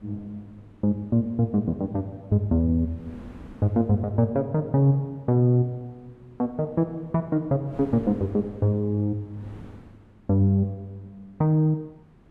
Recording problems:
wind on the microphone; below 350 Hz, SNR 25 dB

